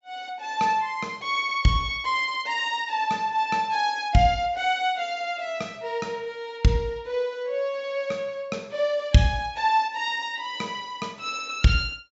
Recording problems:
treble missing; nothing above 8 kHz

